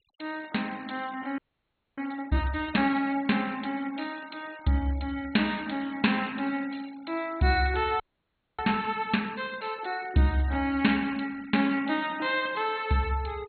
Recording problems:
low-pass filter; nothing above 4.3 kHz
noise reduction artefacts; signal-to-artefact ratio 23 dB
frozen audio; at 1.5 s for 0.5 s and at 8 s for 0.5 s

